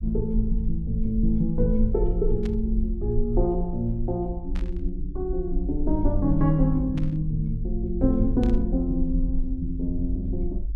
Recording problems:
low-frequency rumble; below 50 Hz, SNR 4 dB
burst of static; 4 times, first at 2.5 s; peak -12 dB vs average level

